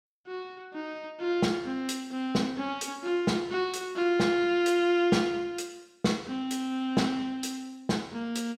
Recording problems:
none

